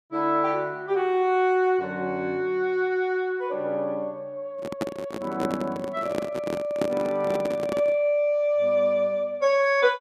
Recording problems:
handling noise; from 4.5 to 8 s; peak +2 dB vs average level

